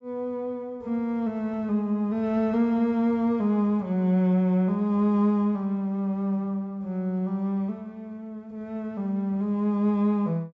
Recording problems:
low-pass filter; nothing above 8 kHz

